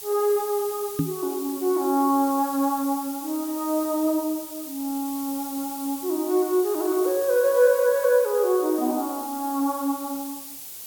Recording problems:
background hiss; SNR 11 dB
microphone thump; at 1 s; peak +3 dB vs average level

